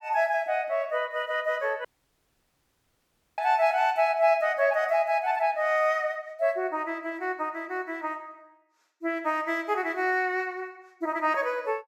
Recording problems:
audio cutting out; at 2 s for 1.5 s

